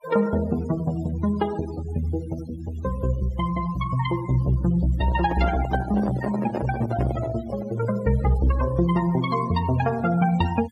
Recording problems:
noise reduction artefacts; signal-to-artefact ratio 16 dB
microphone handling noise; from 5 to 8 s; peak -1 dB vs average level

